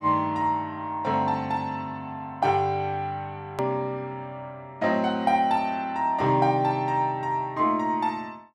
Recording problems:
click at an edit; at 3.5 s

